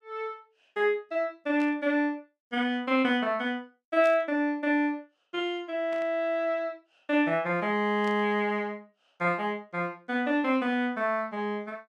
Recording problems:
static burst; 4 times, first at 1.5 s; peak -14 dB vs average level

